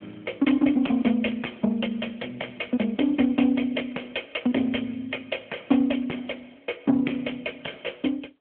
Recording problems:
telephone audio; 240 Hz to 3.4 kHz, AMR-NB
distortion; soft clipping, signal-to-distortion ratio 14 dB

